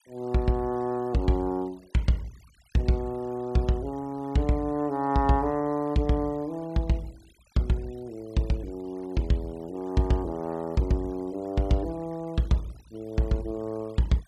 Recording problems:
noise reduction artefacts; signal-to-artefact ratio 27 dB

